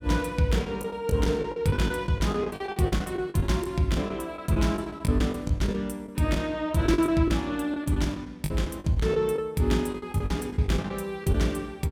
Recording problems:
lost packets; 14% of the sound replaced, filled with the last packet

